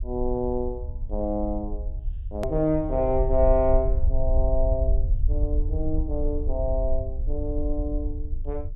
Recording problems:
low-pass filter; nothing above 4 kHz
rumble; below 56 Hz, SNR 2 dB
click at an edit; at 2.5 s

